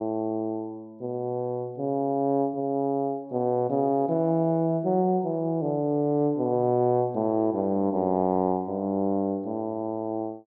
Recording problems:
none

